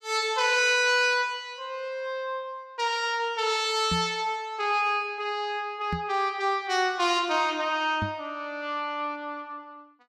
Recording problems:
microphone bump; at 4 s, at 6 s and at 8 s; peak -1 dB vs average level

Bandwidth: 15.5 kHz